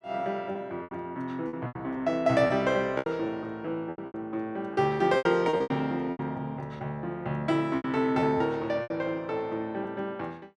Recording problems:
packet loss; 11% of the sound replaced, filled with repeated pitch periods

